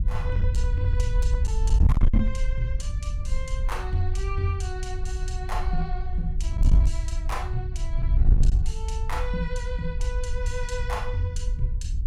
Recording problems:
distortion; hard clipping, signal-to-distortion ratio 11 dB
wind on the microphone; below 66 Hz, SNR -6 dB

